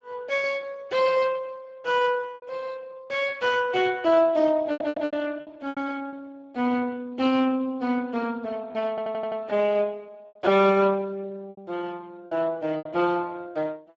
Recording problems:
lossy compression; Speex, log-spectral distance 3 dB
packet loss; 5% of the sound replaced, filled with repeated pitch periods
stutter; at 4.5 s and at 9 s

